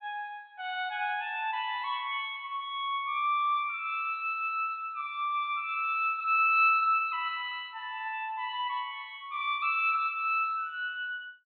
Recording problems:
treble missing; nothing above 4 kHz

